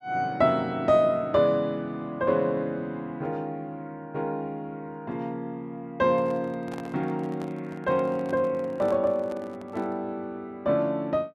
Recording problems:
microphone handling noise; from 6 to 10 s; peak -9 dB vs average level

